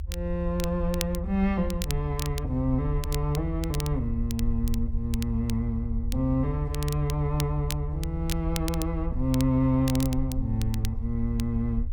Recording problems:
rumble; below 78 Hz, SNR 5 dB
crackling; vinyl, SNR 12 dB

